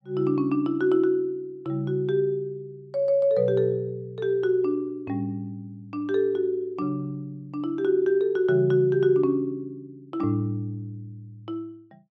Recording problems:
none

